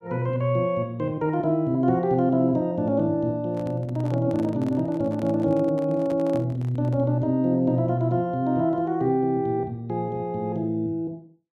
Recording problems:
handling noise; from 3.5 to 7 s; peak -11 dB vs average level

